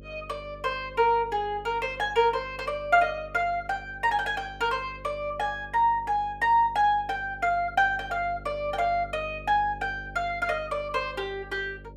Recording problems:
hum; 50 Hz, harmonics up to 600 Hz, SNR 19 dB

